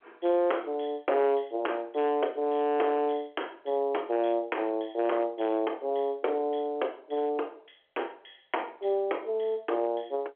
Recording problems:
phone line; 300 Hz to 3.3 kHz, G.711
distortion; hard clipping, signal-to-distortion ratio 12 dB

